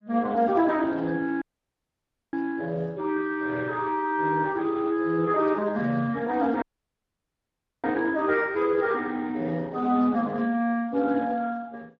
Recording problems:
codec artefacts; Speex, log-spectral distance 3 dB
audio cutting out; at 1.5 s for 1 s and at 6.5 s for 1 s

